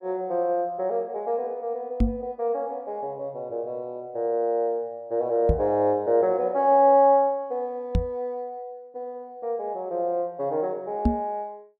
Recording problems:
knock on the microphone; 4 times, first at 2 s; peak +7 dB vs average level

